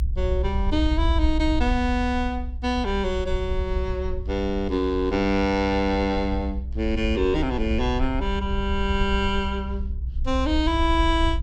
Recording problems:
rumble; below 64 Hz, SNR 4 dB

